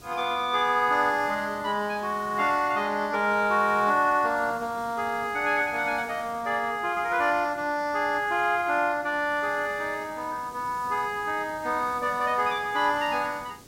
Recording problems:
background hiss; SNR 22 dB

